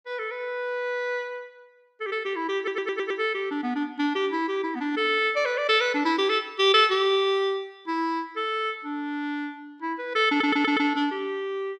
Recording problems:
audio stuttering; at 2.5 s and at 10 s

